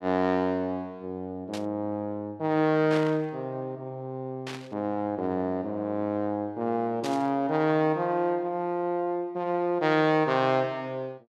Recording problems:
burst of static; 4 times, first at 1.5 s; peak -5 dB vs average level

